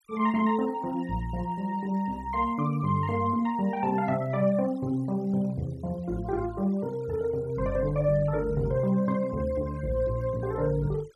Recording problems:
noise reduction artefacts; signal-to-artefact ratio 25 dB

